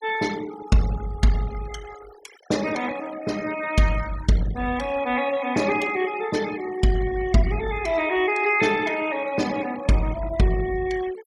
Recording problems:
denoising artefacts; signal-to-artefact ratio 16 dB

